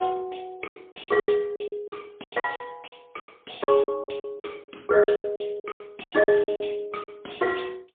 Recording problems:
phone line; 190 Hz to 3.6 kHz, AMR-NB, then MP3
lost packets; 20% of the sound replaced, filled with silence

